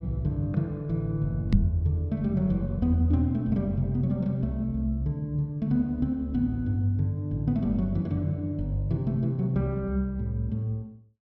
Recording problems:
knock on the microphone; at 1.5 s; peak +8 dB vs average level

